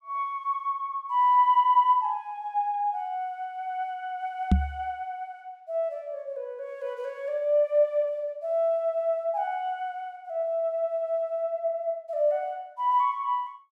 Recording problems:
microphone bump; at 4.5 s; peak +9 dB vs average level

